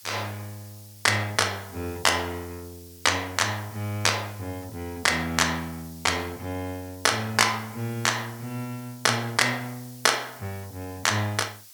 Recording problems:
background hiss; SNR 20 dB

